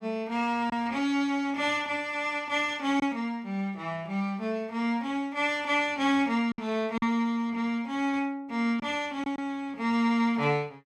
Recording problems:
packet loss; 1.9% of the sound replaced, filled with silence

